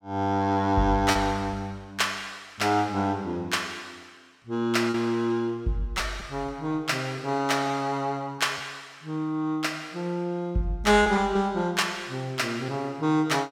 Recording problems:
lost packets; 3% of the sound replaced, filled with repeated pitch periods

